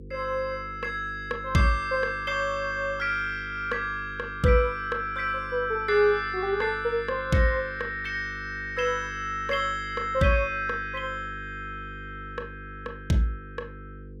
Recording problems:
hum; 50 Hz, harmonics up to 500 Hz, SNR 16 dB

